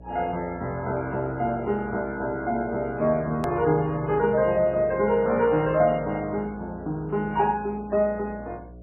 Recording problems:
lossy compression; MP3, log-spectral distance 2 dB, nothing above 13.1 kHz
hum; 60 Hz, harmonics up to 720 Hz, SNR 20 dB
hard cut with a click; at 3.5 s

